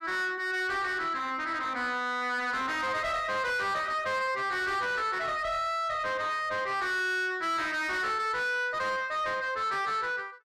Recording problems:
distorted audio; soft clipping, signal-to-distortion ratio 8 dB

